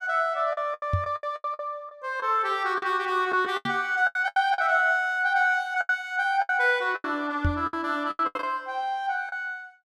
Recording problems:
lost packets; 13% of the sound replaced, filled with the last packet
microphone thump; at 1 s, at 3.5 s and at 7.5 s; peak +3 dB vs average level

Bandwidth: 14.5 kHz